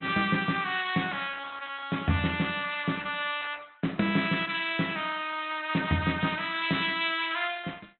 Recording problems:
low-pass filter; nothing above 3.8 kHz
codec artefacts; Opus, log-spectral distance 5 dB

